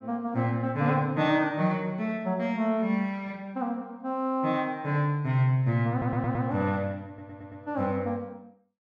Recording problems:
stutter; at 6 s and at 7 s

